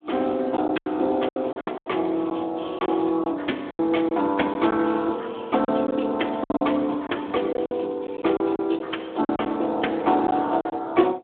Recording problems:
phone line; 260 Hz to 3.6 kHz, Speex
lost packets; 9% of the sound replaced, filled with silence

